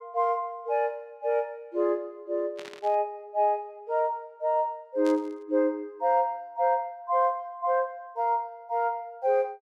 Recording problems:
burst of static; at 2.5 s and at 5 s; peak -11 dB vs average level

